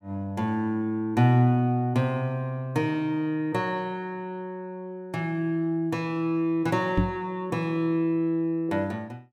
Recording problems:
knock on the microphone; at 7 s; peak +7 dB vs average level

